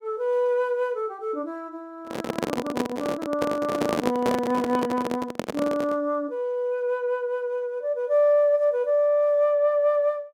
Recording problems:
microphone handling noise; from 2 to 6 s; peak +2 dB vs average level

